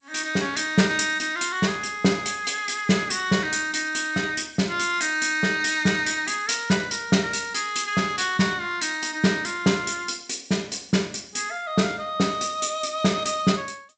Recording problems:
lossy codec; G.722, log-spectral distance 7 dB, nothing above 7.6 kHz

